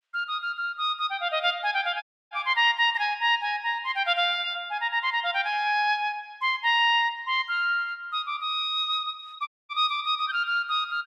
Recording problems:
audio cutting out; at 2 s and at 9.5 s

